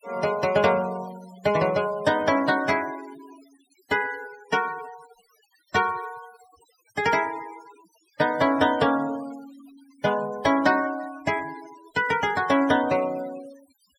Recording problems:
denoising artefacts; signal-to-artefact ratio 19 dB

